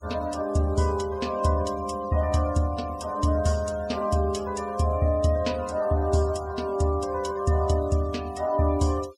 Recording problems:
denoising artefacts; signal-to-artefact ratio 21 dB

